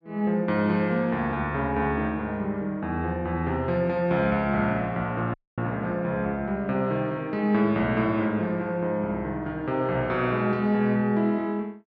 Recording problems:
audio cutting out; at 5.5 s

